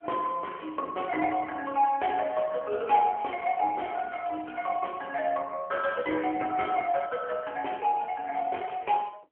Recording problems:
phone line; 340 Hz to 3.2 kHz, AMR-NB
crackle; from 4 to 5 s; loose cable, SNR 27 dB

